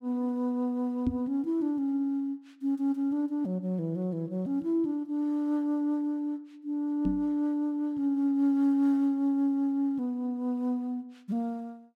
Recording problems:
knock on the microphone; at 1 s and at 7 s; peak +2 dB vs average level

